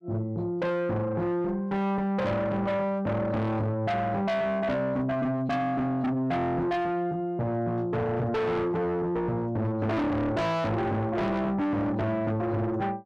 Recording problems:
distortion; soft clipping, signal-to-distortion ratio 7 dB

